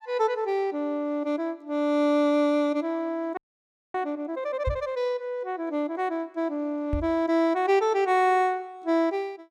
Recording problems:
frozen audio; at 3.5 s for 0.5 s
knock on the microphone; at 4.5 s and at 7 s; peak +1 dB vs average level

